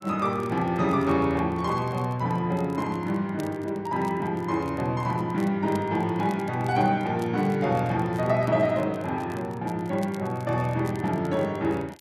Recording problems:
crackling; vinyl, SNR 27 dB

